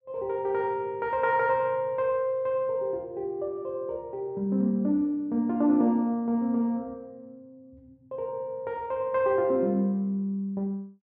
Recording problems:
none

